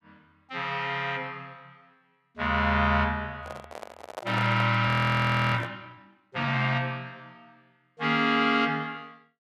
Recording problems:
microphone handling noise; from 3.5 to 5.5 s; peak -6 dB vs average level
audio freezing; at 5 s for 0.5 s

